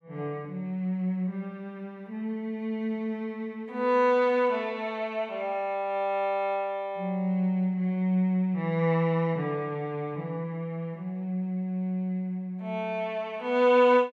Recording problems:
none

